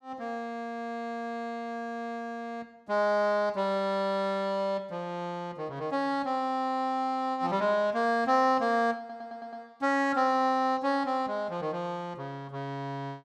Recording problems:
audio stuttering; at 9 s

